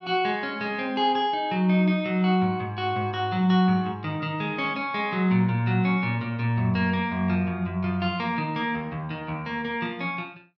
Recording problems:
none

